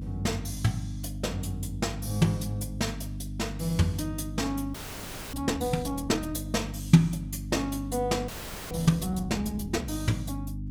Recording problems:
hum; 50 Hz, harmonics up to 300 Hz, SNR 8 dB
frozen audio; at 4.5 s for 0.5 s and at 8.5 s

